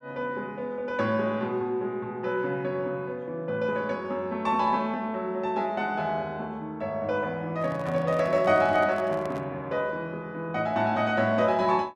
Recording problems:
handling noise; from 7.5 to 9.5 s; peak -8 dB vs average level

